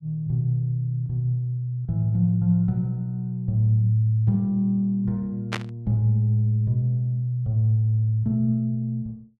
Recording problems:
static burst; at 5.5 s; peak -1 dB vs average level

